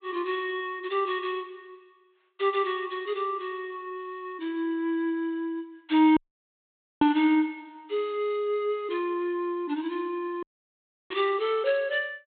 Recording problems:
low-pass filter; nothing above 4 kHz
dropout; at 6 s for 1 s and at 10 s for 0.5 s

